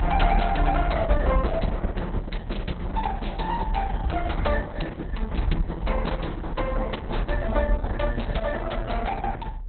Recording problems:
lossy codec; Opus, log-spectral distance 2 dB, nothing above 4.1 kHz
rumble; below 60 Hz, strongest tone 36 Hz, SNR 0 dB

